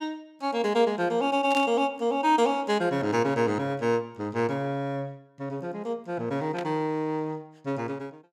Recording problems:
burst of static; at 1.5 s and at 6.5 s; peak -7 dB vs average level

